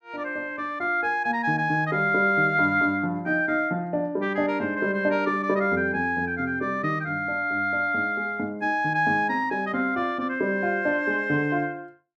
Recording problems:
none

